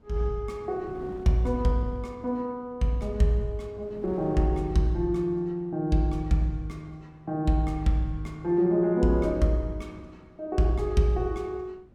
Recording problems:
wind noise; below 310 Hz, SNR 22 dB

